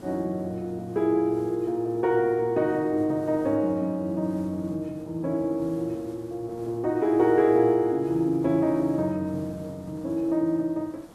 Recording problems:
hiss; SNR 24 dB

